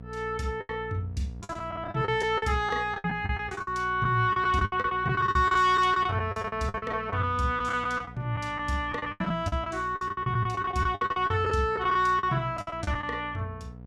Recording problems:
hum; 60 Hz, harmonics up to 720 Hz, SNR 17 dB
packet loss; 16% of the sound replaced, filled with the last packet

